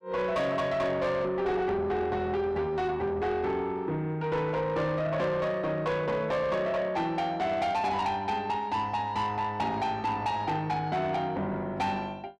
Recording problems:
distorted audio; soft clipping, signal-to-distortion ratio 11 dB

